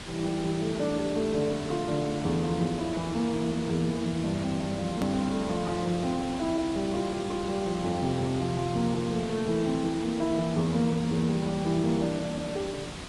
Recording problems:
lossy codec; AAC, log-spectral distance 4 dB, nothing above 13.1 kHz
hiss; slope -3 dB per octave, SNR 10 dB
edit click; at 5 s

